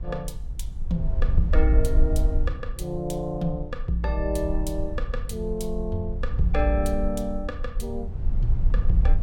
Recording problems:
rumble; below 56 Hz, SNR 0 dB

